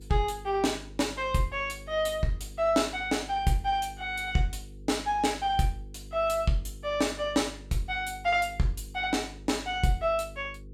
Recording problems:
electrical hum; 50 Hz, harmonics up to 500 Hz, SNR 18 dB

